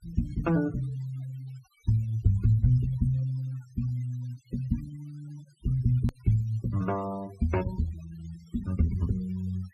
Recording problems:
denoising artefacts; signal-to-artefact ratio 22 dB
edit click; at 6 s

